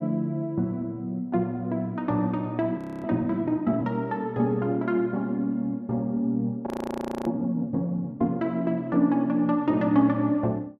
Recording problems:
frozen audio; at 3 s and at 6.5 s for 0.5 s

